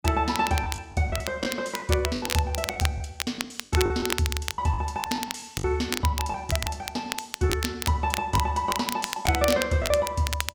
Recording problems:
crackle; vinyl, SNR 6 dB
packet loss; 11% of the sound replaced, filled with the last packet

